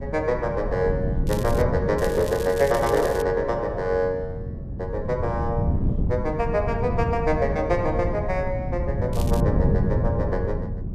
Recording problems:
wind on the microphone; below 170 Hz, SNR 3 dB
crackle; at 1.5 s, from 2 to 3 s and at 9 s; loose cable, SNR 15 dB

